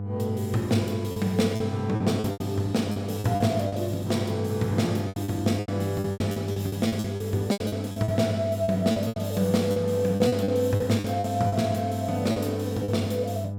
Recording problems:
hum; 50 Hz, harmonics up to 700 Hz, SNR 6 dB
packet loss; 13% of the sound replaced, filled with repeated pitch periods

